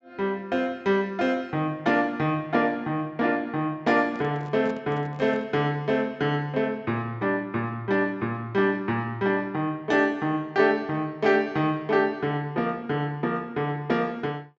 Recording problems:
treble missing; nothing above 8 kHz
microphone handling noise; from 4 to 5.5 s; peak -10 dB vs average level

